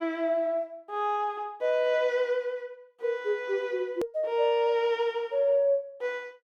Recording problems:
hard cut with a click; at 4 s

